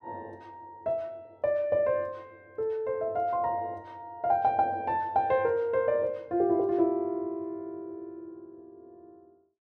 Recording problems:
none

